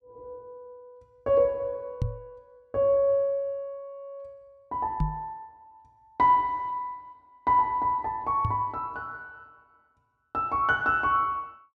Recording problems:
microphone bump; at 2 s, at 5 s and at 8.5 s; peak +2 dB vs average level

